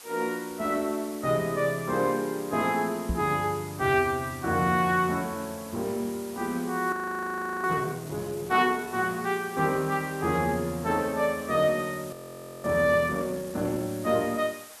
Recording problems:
hiss; SNR 17 dB
microphone thump; at 3 s; peak +1 dB vs average level
audio freezing; at 7 s for 0.5 s and at 12 s for 0.5 s

